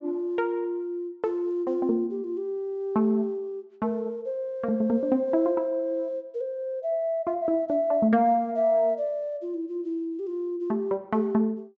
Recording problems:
low-pass filter; nothing above 8 kHz

